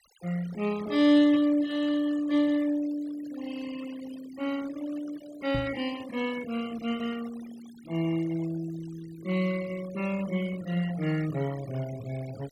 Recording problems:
noise reduction artefacts; signal-to-artefact ratio 18 dB
microphone bump; at 5.5 s; peak -2 dB vs average level

